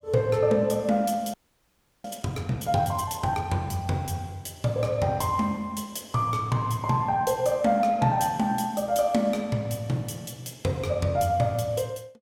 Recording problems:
audio freezing; at 1.5 s for 0.5 s

